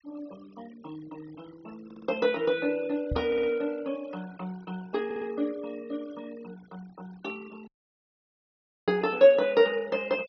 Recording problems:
low-pass filter; nothing above 6 kHz
noise reduction artefacts; signal-to-artefact ratio 24 dB
stutter; at 2 s, at 3.5 s and at 5 s
knock on the microphone; at 3 s; peak -1 dB vs average level
dropout; at 7.5 s for 1 s

